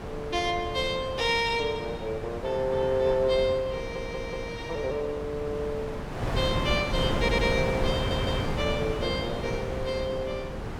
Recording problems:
wind on the microphone; below 650 Hz, SNR 4 dB
audio stuttering; at 4 s, at 7 s and at 8 s

